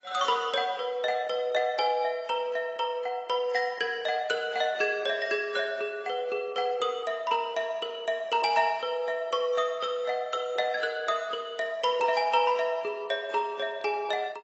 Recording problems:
lossy codec; AAC, log-spectral distance 2 dB, nothing above 7.6 kHz

